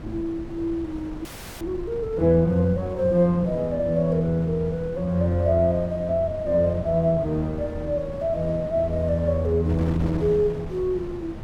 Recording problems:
wind noise; below 310 Hz, SNR 14 dB
audio freezing; at 1.5 s

